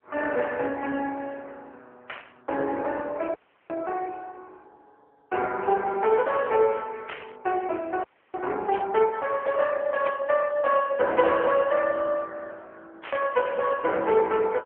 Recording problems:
phone line; 320 Hz to 3.4 kHz, AMR-NB
static burst; 5 times, first at 2 s; peak -6 dB vs average level
frozen audio; at 3.5 s and at 8 s

